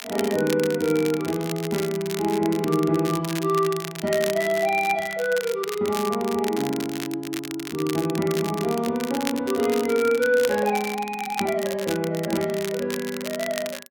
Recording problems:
crackle; vinyl, SNR 11 dB

